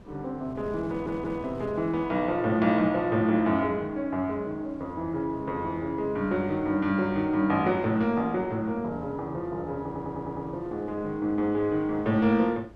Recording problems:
wind noise; below 480 Hz, SNR 20 dB
audio stuttering; at 1 s and at 10 s

